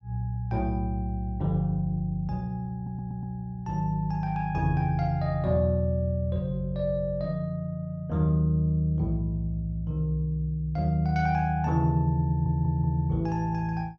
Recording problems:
stutter; at 3 s and at 12 s

